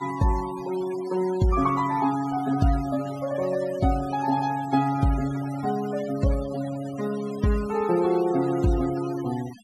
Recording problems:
denoising artefacts; signal-to-artefact ratio 16 dB

